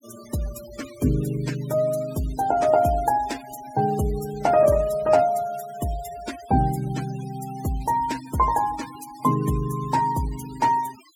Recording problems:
noise reduction artefacts; signal-to-artefact ratio 18 dB

